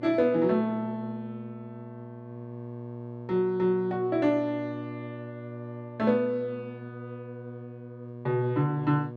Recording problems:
hum; 60 Hz, harmonics up to 720 Hz, SNR 13 dB

